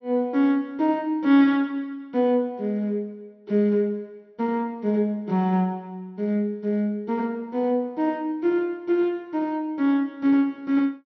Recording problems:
low-pass filter; nothing above 6 kHz

